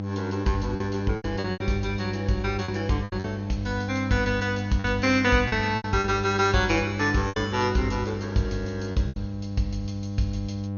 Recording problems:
lossy compression; MP2, log-spectral distance 3 dB, nothing above 6.7 kHz
hum; 50 Hz, harmonics up to 800 Hz, SNR 5 dB
packet loss; 8% of the sound replaced, filled with repeated pitch periods

